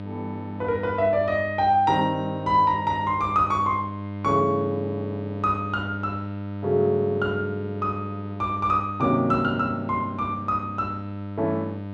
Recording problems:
electrical hum; 50 Hz, harmonics up to 1.6 kHz, SNR 10 dB

